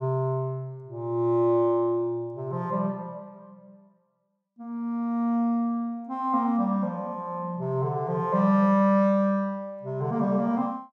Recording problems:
none

